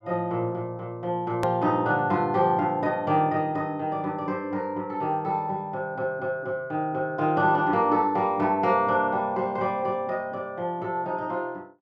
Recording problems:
edit click; at 1.5 s

